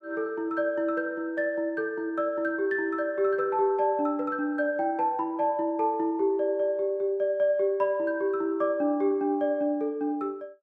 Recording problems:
none

